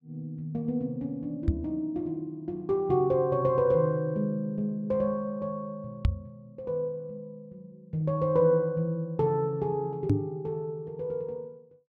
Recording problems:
microphone bump; at 1.5 s, at 6 s and at 10 s; peak +8 dB vs average level

